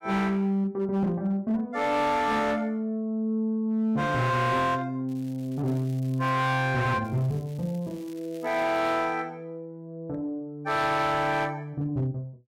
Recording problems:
distortion; hard clipping, signal-to-distortion ratio 11 dB
crackle; from 5 to 6.5 s and from 7 to 9 s; loose cable, SNR 28 dB

